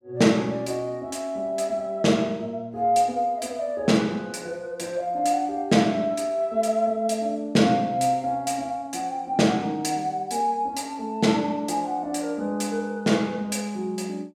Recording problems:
none

